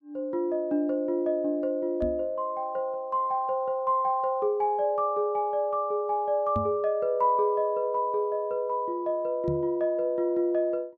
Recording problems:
knock on the microphone; at 2 s, at 6.5 s and at 9.5 s; peak -1 dB vs average level

